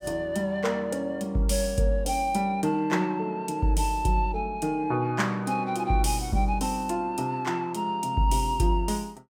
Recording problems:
none

